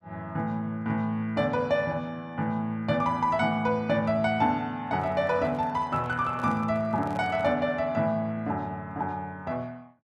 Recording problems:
handling noise; from 5 to 7.5 s; peak -10 dB vs average level

